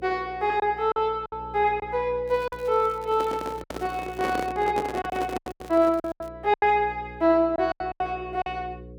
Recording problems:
hum; 60 Hz, harmonics up to 540 Hz, SNR 19 dB
lost packets; 10% of the sound replaced, filled with silence
crackling; from 2.5 to 4.5 s and from 5 to 6.5 s; loose cable, SNR 27 dB
handling noise; from 3 to 6 s; peak -1 dB vs average level

